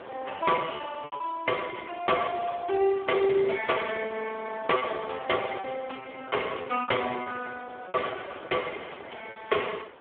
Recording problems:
telephone audio; 280 Hz to 3.4 kHz, Speex
wind noise; below 1.3 kHz, SNR 16 dB
lost packets; 7% of the sound replaced, filled with repeated pitch periods

